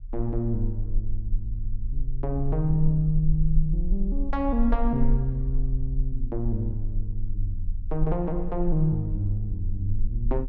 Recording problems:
rumble; below 40 Hz, strongest tone 18 Hz, SNR 3 dB

